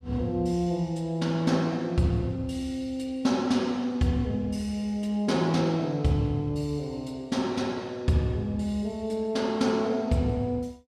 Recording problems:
none

